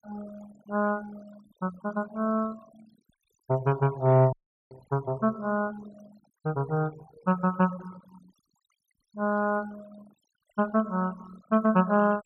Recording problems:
denoising artefacts; signal-to-artefact ratio 22 dB
audio cutting out; at 4.5 s

